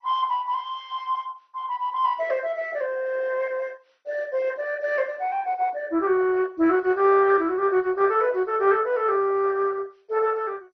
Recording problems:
lossy compression; MP2, log-spectral distance 3 dB, nothing above 6 kHz

